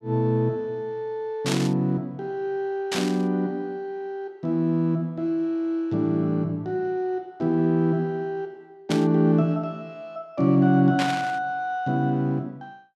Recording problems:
static burst; 4 times, first at 1.5 s; peak 0 dB vs average level

